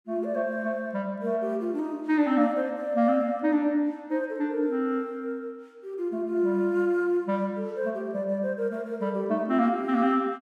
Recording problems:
none

